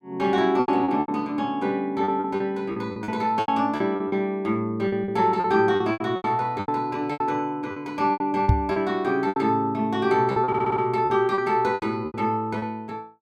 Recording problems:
lost packets; 14% of the sound replaced, filled with repeated pitch periods
microphone thump; at 8.5 s; peak +8 dB vs average level
audio stuttering; at 10 s

